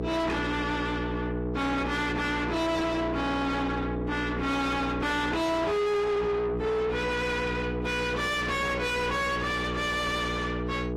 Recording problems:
lossy compression; AAC, log-spectral distance 3 dB, nothing above 15.1 kHz
distortion; soft clipping, signal-to-distortion ratio 6 dB
mains hum; 60 Hz, harmonics up to 1.4 kHz, SNR 4 dB

